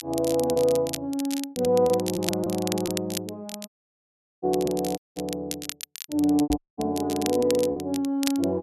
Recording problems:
crackle; vinyl, SNR 10 dB
lost packets; 8% of the sound replaced, filled with repeated pitch periods
dropout; at 3.5 s for 0.5 s, at 5 s and at 6.5 s
microphone bump; at 6.5 s; peak -4 dB vs average level

